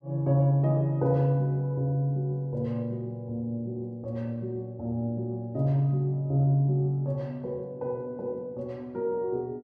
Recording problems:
none

